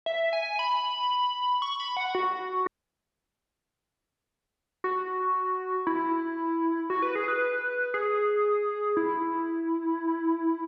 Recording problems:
dropout; at 2.5 s for 2 s

